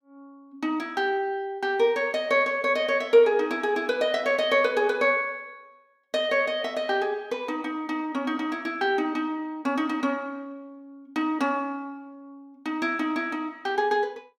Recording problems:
none

